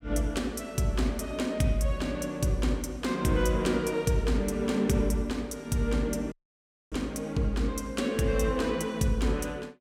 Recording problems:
dropout; at 6.5 s for 0.5 s

